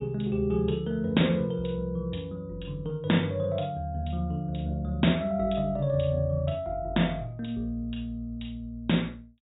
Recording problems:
treble cut off; nothing above 4 kHz

